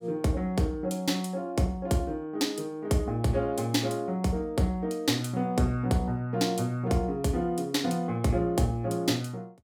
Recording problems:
none

